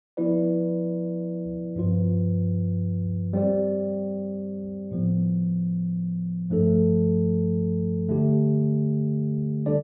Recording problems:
treble cut off; nothing above 3.8 kHz

